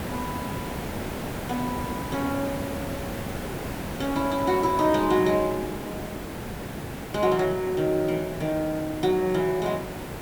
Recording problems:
hiss; slope -6 dB per octave, SNR 7 dB

